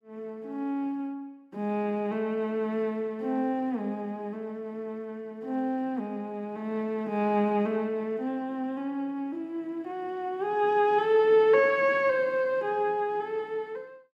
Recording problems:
none

